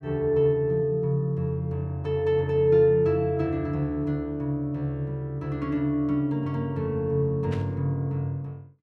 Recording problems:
burst of static; at 7.5 s; peak -12 dB vs average level

